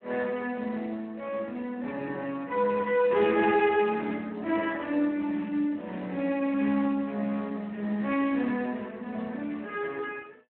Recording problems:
phone line; 220 Hz to 3.3 kHz, Speex
crackling; from 5.5 to 8.5 s; loose cable, SNR 27 dB

